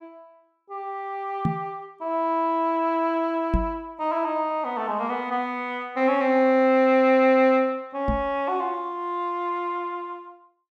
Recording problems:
knock on the microphone; at 1.5 s, at 3.5 s and at 8 s; peak +3 dB vs average level

